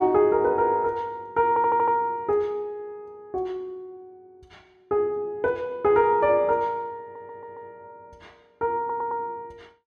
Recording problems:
audio stuttering; at 1.5 s, at 7 s and at 9 s

